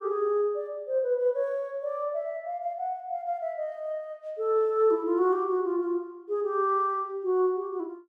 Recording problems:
none

